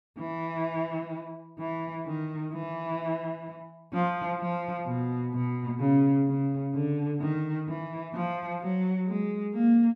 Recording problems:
none

